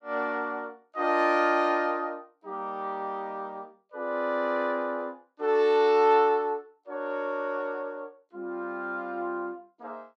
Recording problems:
none

